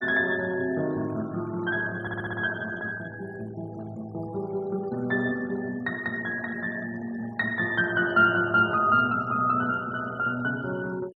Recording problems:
denoising artefacts; signal-to-artefact ratio 21 dB
audio stuttering; at 2 s

